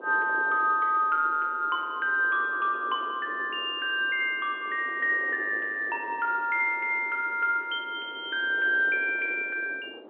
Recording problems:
telephone audio; 260 Hz to 3.3 kHz, G.711
wind on the microphone; below 590 Hz, SNR 19 dB

